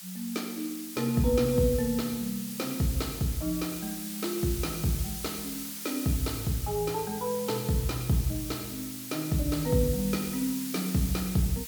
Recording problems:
background hiss; slope +3 dB per octave, SNR 7 dB

